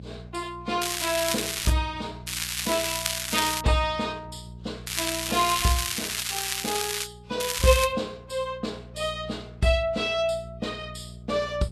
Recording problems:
lossy codec; Vorbis, log-spectral distance 8 dB, nothing above 13.5 kHz
electrical hum; 60 Hz, harmonics up to 600 Hz, SNR 17 dB
crackle; 4 times, first at 1 s; loose cable, SNR 0 dB

